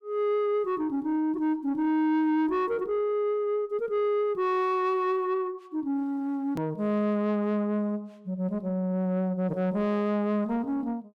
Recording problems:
distorted audio; soft clipping, signal-to-distortion ratio 11 dB
hard cut with a click; at 6.5 s

